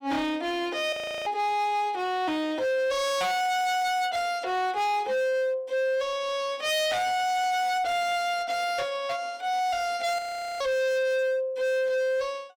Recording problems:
distortion; hard clipping, signal-to-distortion ratio 7 dB
frozen audio; at 1 s and at 10 s

